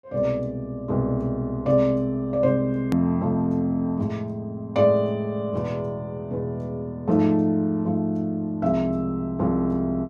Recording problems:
click at an edit; at 3 s

